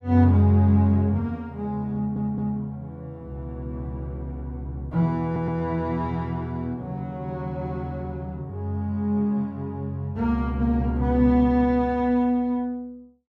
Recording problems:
stutter; at 2 s and at 5 s

